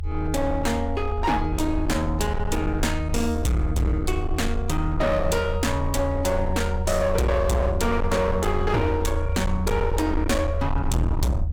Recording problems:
distorted audio; hard clipping, signal-to-distortion ratio 8 dB
rumble; below 80 Hz, strongest tone 22 Hz, SNR 4 dB

